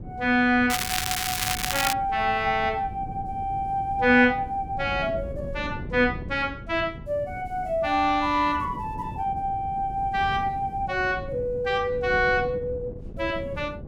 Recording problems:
wind noise; below 220 Hz, SNR 13 dB
crackling; from 0.5 to 2 s; loose cable, SNR 1 dB

